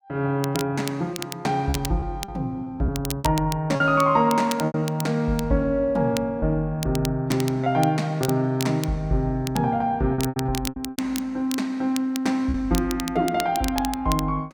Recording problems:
crackle; vinyl, SNR 12 dB
packet loss; 6% of the sound replaced, filled with repeated pitch periods

